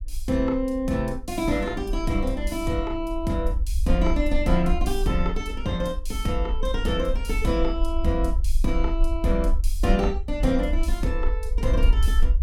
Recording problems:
rumble; below 52 Hz, SNR 2 dB

